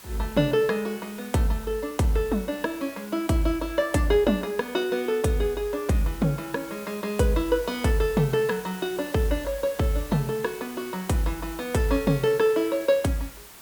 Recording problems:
hiss; slope -1 dB per octave, SNR 17 dB

